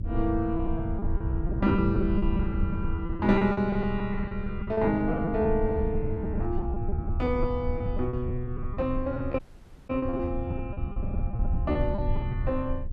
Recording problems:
rumble; below 96 Hz, SNR 4 dB
packet loss; 16% of the sound replaced, filled with repeated pitch periods
audio cutting out; at 9.5 s for 0.5 s

